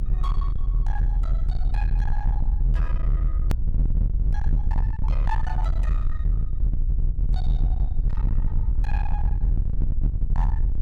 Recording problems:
distorted audio; hard clipping, signal-to-distortion ratio 7 dB
low-frequency rumble; below 58 Hz, SNR -14 dB
click at an edit; at 3.5 s

